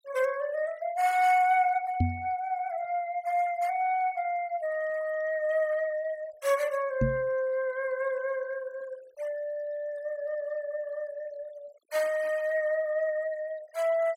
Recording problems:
noise reduction artefacts; signal-to-artefact ratio 23 dB
knock on the microphone; at 2 s and at 7 s; peak +6 dB vs average level

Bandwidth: 16.5 kHz